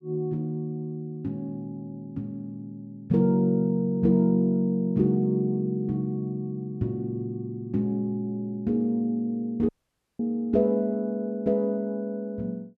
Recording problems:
audio cutting out; at 9.5 s for 0.5 s

